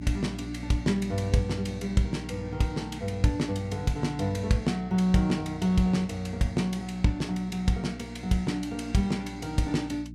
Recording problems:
hum; 60 Hz, harmonics up to 300 Hz, SNR 12 dB

